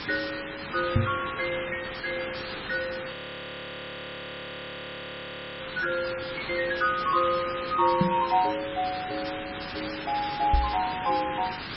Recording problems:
codec artefacts; MP3, log-spectral distance 15 dB
background hiss; SNR 7 dB
microphone bump; at 1 s, at 8 s and at 11 s; peak +9 dB vs average level
audio freezing; at 3 s for 2.5 s

